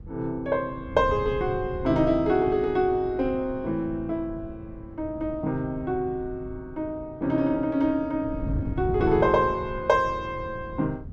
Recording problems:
wind on the microphone; below 150 Hz, SNR 12 dB

